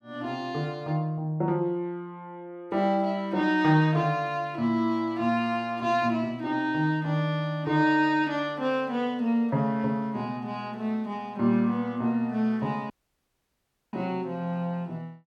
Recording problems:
audio cutting out; at 13 s for 1 s

